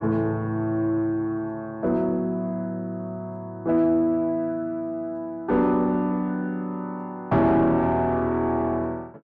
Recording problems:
distorted audio; soft clipping, signal-to-distortion ratio 11 dB

